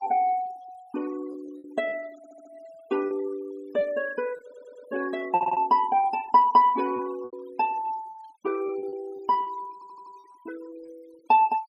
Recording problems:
noise reduction artefacts; signal-to-artefact ratio 23 dB
lost packets; 7% of the sound replaced, filled with repeated pitch periods
stutter; 4 times, first at 2 s

